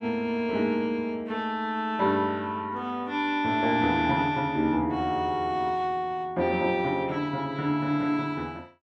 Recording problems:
none

